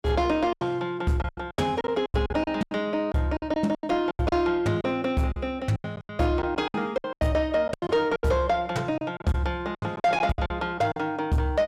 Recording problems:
distorted audio; soft clipping, signal-to-distortion ratio 10 dB
lost packets; 16% of the sound replaced, filled with silence

